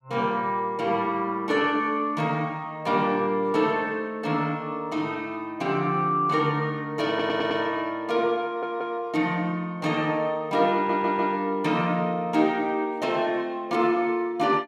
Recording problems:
audio stuttering; at 7 s, at 8.5 s and at 11 s

